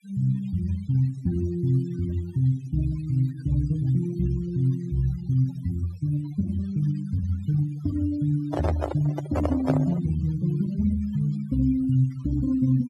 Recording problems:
denoising artefacts; signal-to-artefact ratio 19 dB
handling noise; from 8.5 to 10 s; peak +3 dB vs average level

